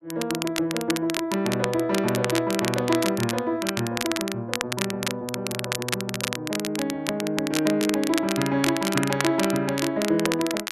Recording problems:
crackling; vinyl, SNR 5 dB

